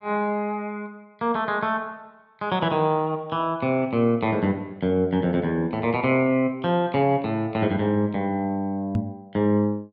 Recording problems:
microphone bump; at 9 s; peak +3 dB vs average level

